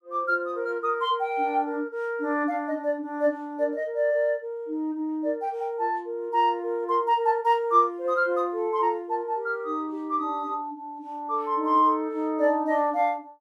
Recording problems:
none

